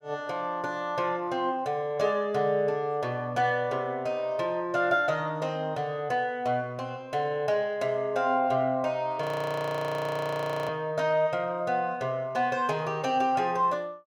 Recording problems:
frozen audio; at 9 s for 1.5 s

